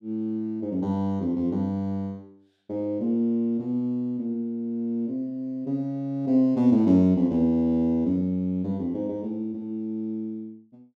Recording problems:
none

